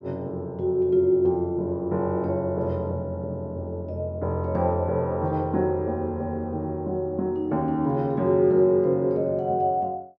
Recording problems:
none

